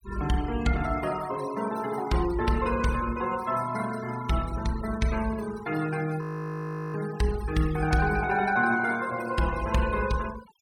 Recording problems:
noise reduction artefacts; signal-to-artefact ratio 16 dB
frozen audio; at 6 s for 0.5 s

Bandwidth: 17 kHz